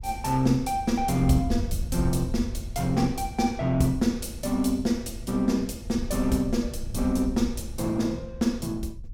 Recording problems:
wind noise; below 78 Hz, SNR 10 dB

